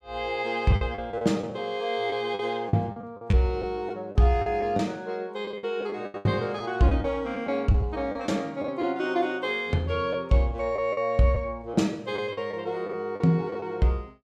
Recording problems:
lost packets; 9% of the sound replaced, filled with the last packet

